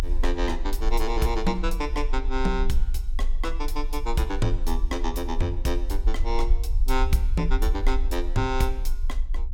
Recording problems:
low-frequency rumble; below 42 Hz, strongest tone 22 Hz, SNR 0 dB

